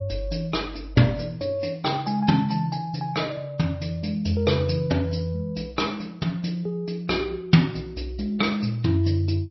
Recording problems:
lossy compression; MP3, log-spectral distance 3 dB, nothing above 5.7 kHz

